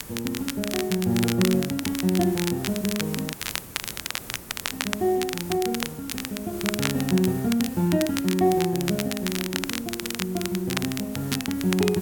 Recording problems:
hiss; slope -4 dB per octave, SNR 14 dB
crackling; vinyl, SNR 6 dB
audio cutting out; at 3.5 s for 1.5 s

